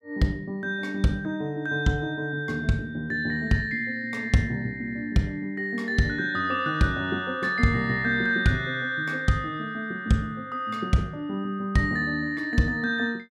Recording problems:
none

